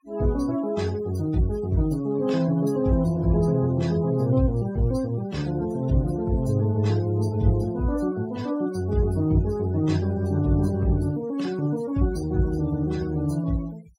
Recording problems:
noise reduction artefacts; signal-to-artefact ratio 22 dB

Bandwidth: 16 kHz